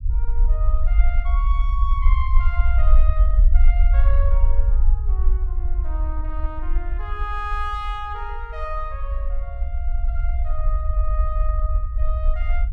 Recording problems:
rumble; below 52 Hz, SNR -11 dB

